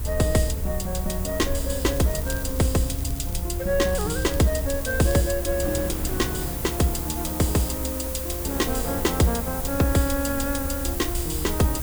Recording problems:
mains hum; 50 Hz, harmonics up to 2.6 kHz, SNR 22 dB
background hiss; slope -3 dB per octave, SNR 7 dB
low-frequency rumble; below 70 Hz, SNR 7 dB
wind on the microphone; below 350 Hz, SNR 16 dB
crackling; from 2 to 3.5 s and from 4 to 5.5 s; loose cable, SNR 18 dB

